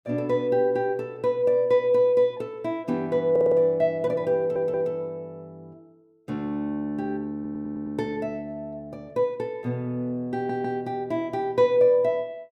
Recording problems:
stutter; 4 times, first at 3.5 s

